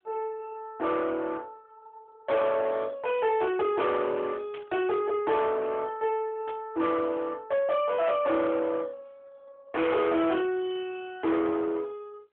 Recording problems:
phone line; 280 Hz to 3.8 kHz, AMR-NB
distortion; soft clipping, signal-to-distortion ratio 8 dB
static burst; at 4.5 s and at 6.5 s; peak -13 dB vs average level

